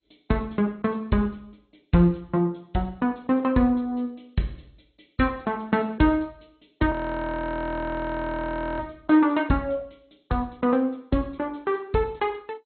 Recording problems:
lossy codec; MP2, log-spectral distance 3 dB, nothing above 4.2 kHz
audio freezing; at 7 s for 2 s

